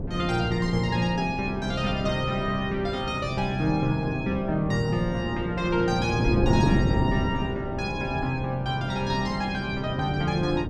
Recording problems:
wind noise; below 300 Hz, SNR 4 dB

